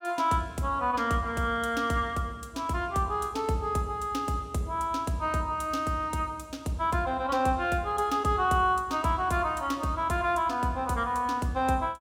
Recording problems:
none

